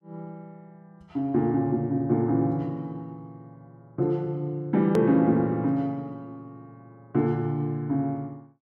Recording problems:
edit click; at 5 s

